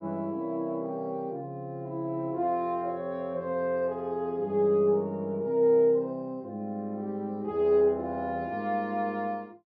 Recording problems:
treble missing; nothing above 6 kHz

